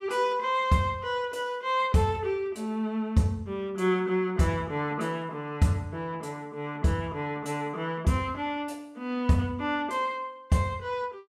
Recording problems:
none

